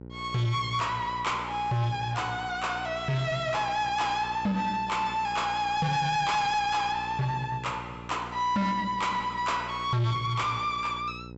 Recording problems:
treble missing; nothing above 7.6 kHz
distortion; soft clipping, signal-to-distortion ratio 10 dB
hum; 60 Hz, harmonics up to 1 kHz, SNR 16 dB

